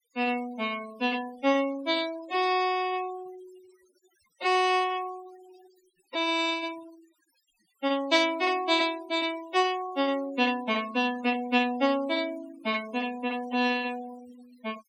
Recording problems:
denoising artefacts; signal-to-artefact ratio 18 dB

